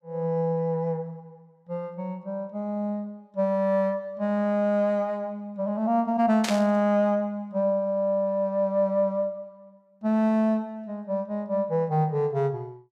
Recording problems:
burst of static; at 6.5 s; peak 0 dB vs average level

